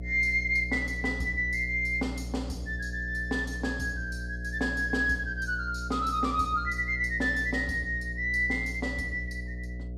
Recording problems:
hum; 60 Hz, harmonics up to 660 Hz, SNR 9 dB

